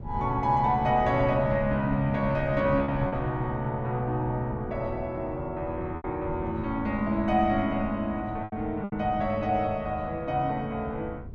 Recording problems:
wind noise; below 150 Hz, SNR 12 dB
packet loss; 3% of the sound replaced, filled with repeated pitch periods

